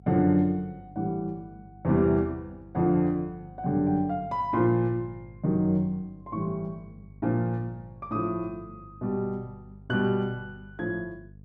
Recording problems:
hum; 50 Hz, harmonics up to 450 Hz, SNR 21 dB

